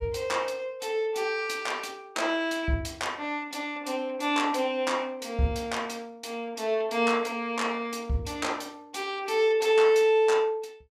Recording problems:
none

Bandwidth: 15.5 kHz